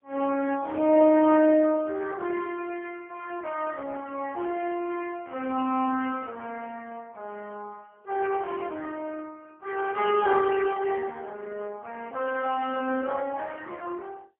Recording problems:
telephone audio; 240 Hz to 2.7 kHz, AMR-NB, then MP3

